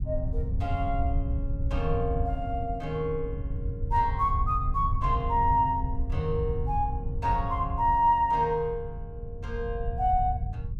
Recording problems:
low-frequency rumble; below 96 Hz, SNR 5 dB

